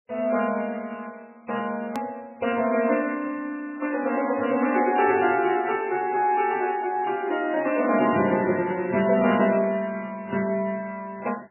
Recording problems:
lossy compression; AAC, then MP3, log-spectral distance 3 dB, nothing above 2.4 kHz
hard cut with a click; at 2 s

